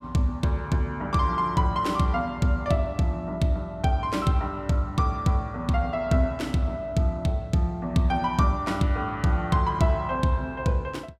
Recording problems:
none

